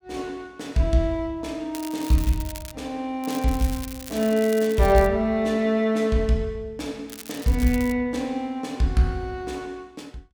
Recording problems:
crackle; 4 times, first at 1.5 s; loose cable, SNR 15 dB

